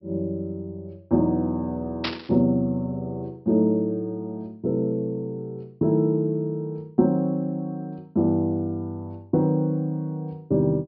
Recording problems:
low-pass filter; nothing above 5.5 kHz
burst of static; at 2 s; peak +2 dB vs average level

